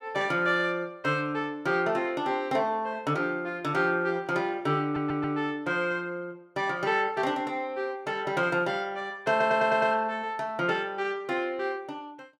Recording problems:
audio stuttering; at 5 s and at 9.5 s

